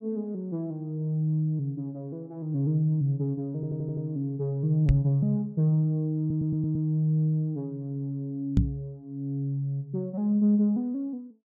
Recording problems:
stutter; at 3.5 s and at 6 s
microphone thump; at 5 s and at 8.5 s; peak +9 dB vs average level

